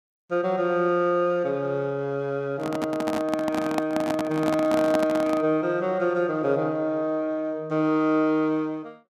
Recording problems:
microphone handling noise; from 2.5 to 5.5 s; peak +1 dB vs average level

